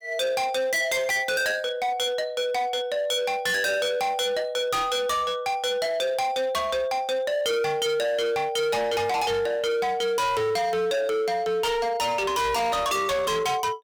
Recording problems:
distortion; hard clipping, signal-to-distortion ratio 6 dB

